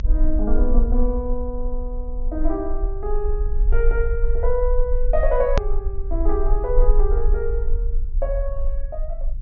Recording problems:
low-pass filter; nothing above 6.6 kHz
rumble; below 40 Hz, strongest tone 22 Hz, SNR -2 dB
edit click; at 5.5 s

